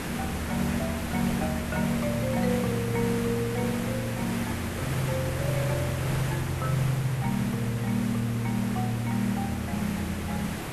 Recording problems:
hiss; slope -5 dB per octave, SNR 5 dB

